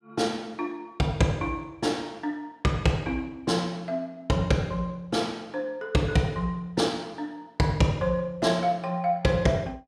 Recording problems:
none

